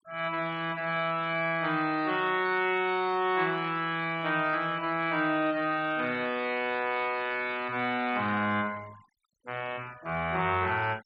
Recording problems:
denoising artefacts; signal-to-artefact ratio 22 dB

